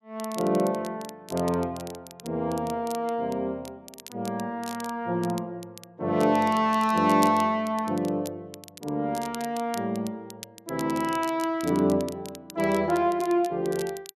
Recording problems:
crackling; vinyl, SNR 18 dB

